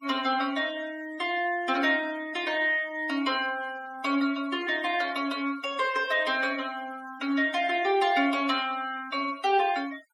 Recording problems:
noise reduction artefacts; signal-to-artefact ratio 20 dB

